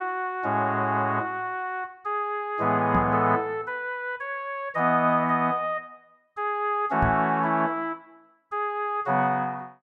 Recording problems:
microphone thump; at 3 s and at 7 s; peak +2 dB vs average level

